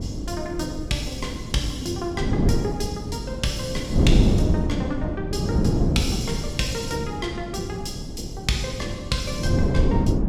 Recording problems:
wind noise; below 240 Hz, SNR -2 dB

